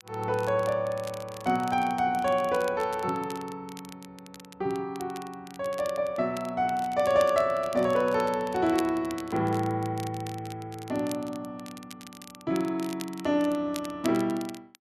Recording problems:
crackle; vinyl, SNR 18 dB

